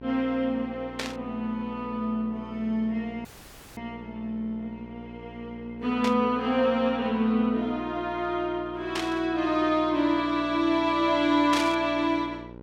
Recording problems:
electrical hum; 60 Hz, harmonics up to 1.5 kHz, SNR 17 dB
static burst; 4 times, first at 1 s; peak 0 dB vs average level
audio cutting out; at 3.5 s for 0.5 s

